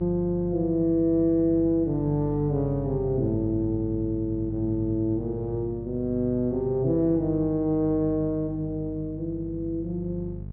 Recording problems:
mains hum; 50 Hz, harmonics up to 450 Hz, SNR 11 dB

